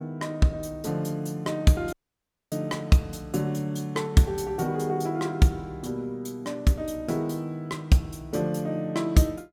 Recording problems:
dropout; at 2 s for 0.5 s

